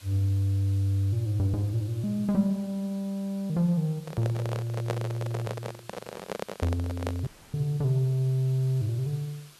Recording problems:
background hiss; slope 0 dB per octave, SNR 24 dB
microphone handling noise; from 4 to 7.5 s; peak +1 dB vs average level
dropout; at 7.5 s

